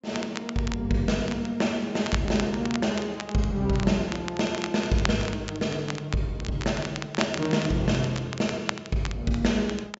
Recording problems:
low-pass filter; nothing above 8 kHz
crackle; vinyl, SNR 11 dB

